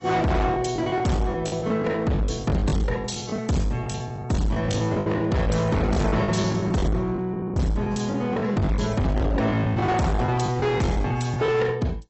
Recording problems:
lossy compression; AAC, log-spectral distance 3 dB, nothing above 8 kHz
distortion; hard clipping, uneven, signal-to-distortion ratio 6 dB
lost packets; 16% of the sound replaced, filled with the last packet

